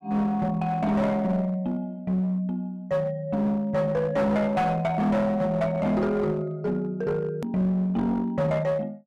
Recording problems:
distorted audio; hard clipping, uneven, signal-to-distortion ratio 10 dB
click at an edit; at 7.5 s

